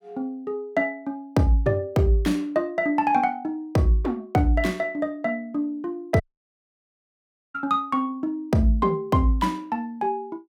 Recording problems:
dropout; at 6 s for 1.5 s

